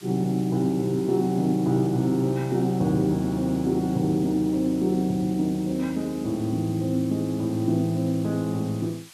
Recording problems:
hiss; slope +3 dB per octave, SNR 22 dB

